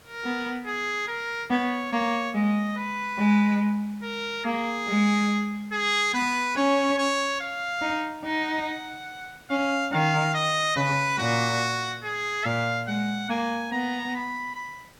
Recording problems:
background hiss; slope -3 dB per octave, SNR 27 dB

